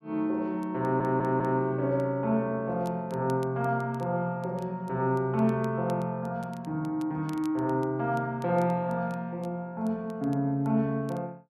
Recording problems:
crackle; vinyl, SNR 29 dB
audio stuttering; at 1 s

